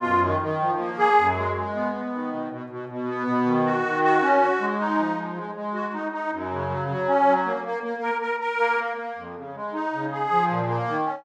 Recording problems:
none

